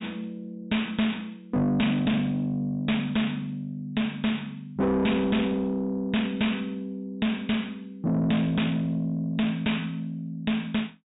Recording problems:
treble cut off; nothing above 4 kHz
distorted audio; soft clipping, signal-to-distortion ratio 7 dB

